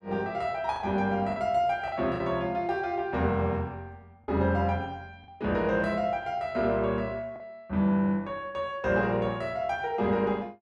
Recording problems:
lost packets; 3% of the sound replaced, filled with the last packet

